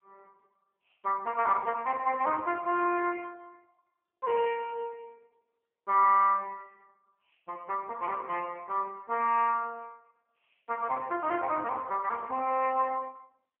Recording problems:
telephone audio; 280 Hz to 3.5 kHz, AMR-NB

